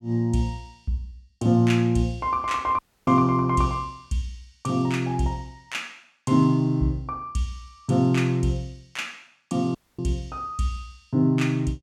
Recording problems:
dropout; at 3 s and at 10 s

